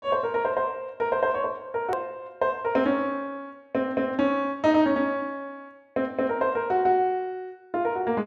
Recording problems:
hard cut with a click; at 2 s

